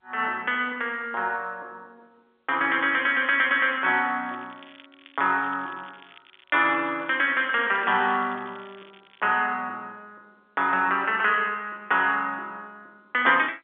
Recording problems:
phone line; 220 Hz to 3.6 kHz, G.711
crackle; from 4 to 7 s and from 7 to 9.5 s; loose cable, SNR 27 dB

